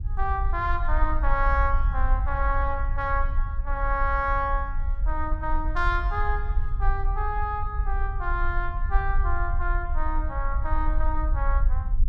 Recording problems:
rumble; below 54 Hz, strongest tone 22 Hz, SNR 0 dB

